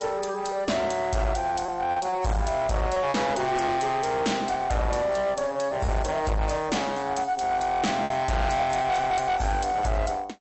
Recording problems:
low-pass filter; nothing above 8 kHz
lossy compression; MP3, log-spectral distance 3 dB
distortion; hard clipping, uneven, signal-to-distortion ratio 6 dB
packet loss; 3% of the sound replaced, filled with repeated pitch periods

